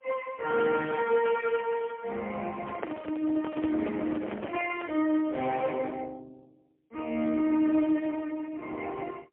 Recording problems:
phone line; 260 Hz to 3.2 kHz, AMR-NB, then MP3
microphone handling noise; from 2.5 to 5 s; peak -3 dB vs average level

